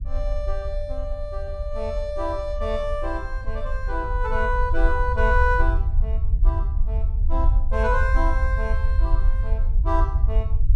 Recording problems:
low-frequency rumble; below 60 Hz, SNR -2 dB

